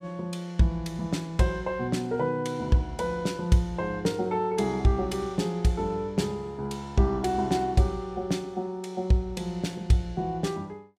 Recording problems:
none

